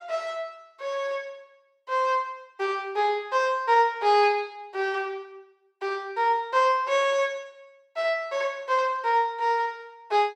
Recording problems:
none

